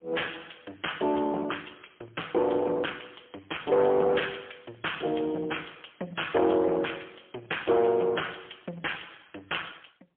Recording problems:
phone line; 260 Hz to 3.3 kHz, AMR-NB, then MP3
distorted audio; hard clipping, uneven, signal-to-distortion ratio 10 dB

